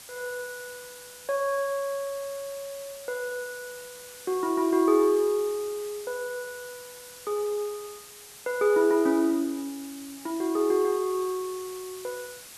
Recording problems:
hiss; slope +1 dB per octave, SNR 16 dB

